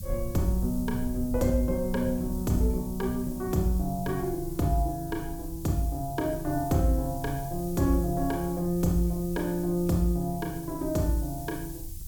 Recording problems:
background hiss; SNR 16 dB
low-frequency rumble; below 92 Hz, SNR 11 dB

